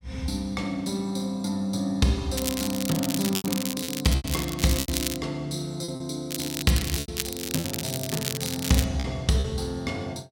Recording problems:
packet loss; 5% of the sound replaced, filled with repeated pitch periods
crackling; from 2.5 to 5 s and from 6.5 to 9 s; loose cable, SNR 3 dB

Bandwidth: 16.5 kHz